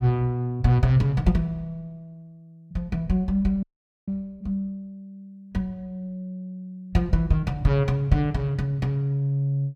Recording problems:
audio freezing; at 3.5 s

